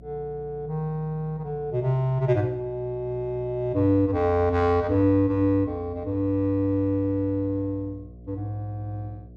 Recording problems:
hum; 60 Hz, harmonics up to 720 Hz, SNR 20 dB

